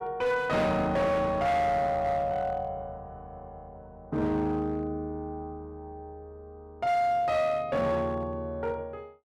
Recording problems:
distortion; hard clipping, uneven, signal-to-distortion ratio 10 dB

